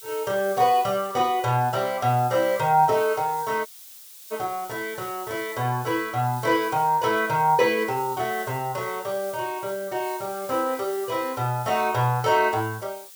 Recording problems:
background hiss; slope +3 dB per octave, SNR 16 dB
dropout; at 3.5 s for 0.5 s

